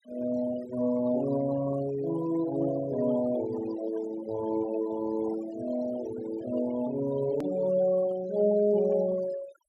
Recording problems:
denoising artefacts; signal-to-artefact ratio 16 dB
edit click; at 7.5 s

